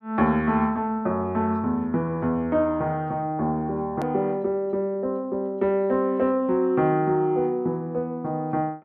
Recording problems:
edit click; at 4 s

